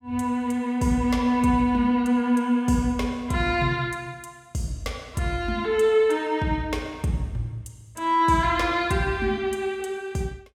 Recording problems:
none

